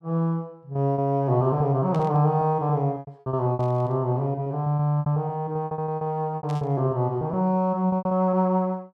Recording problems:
packet loss; 15% of the sound replaced, filled with repeated pitch periods
static burst; at 2 s, at 3.5 s and at 6.5 s; peak -15 dB vs average level

